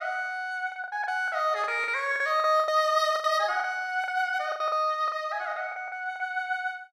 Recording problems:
packet loss; 13% of the sound replaced, filled with the last packet

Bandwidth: 15 kHz